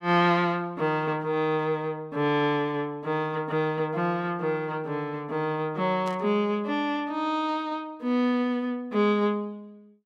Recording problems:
static burst; at 6 s; peak -13 dB vs average level

